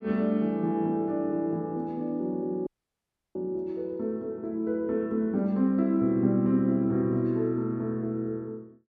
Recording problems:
audio cutting out; at 2.5 s for 0.5 s

